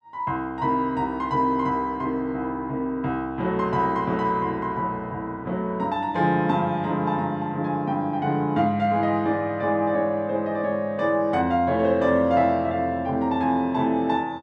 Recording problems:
none

